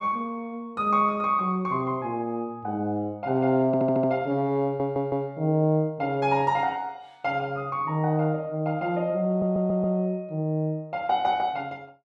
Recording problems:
stutter; at 3.5 s, at 4.5 s and at 9.5 s

